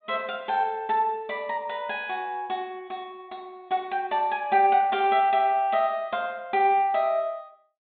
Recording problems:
low-pass filter; nothing above 4 kHz

